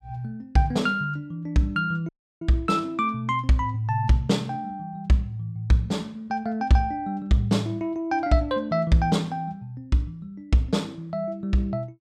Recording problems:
dropout; at 2 s

